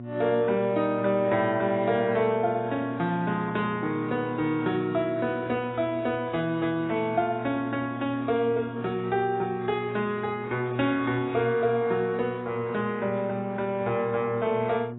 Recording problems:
lossy codec; AAC, log-spectral distance 2 dB, nothing above 3.8 kHz
hum; 60 Hz, harmonics up to 720 Hz, SNR 12 dB

